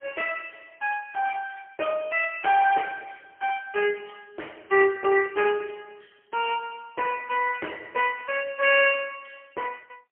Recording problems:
phone line; 340 Hz to 3.1 kHz, AMR-NB, then MP3

